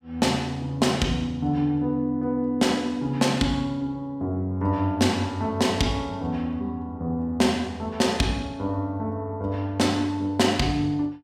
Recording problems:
none

